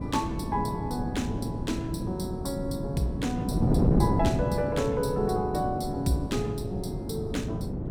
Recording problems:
wind noise; below 290 Hz, SNR 0 dB

